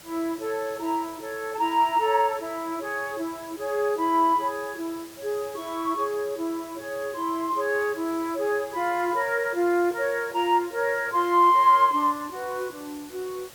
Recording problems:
hiss; slope -2 dB per octave, SNR 20 dB

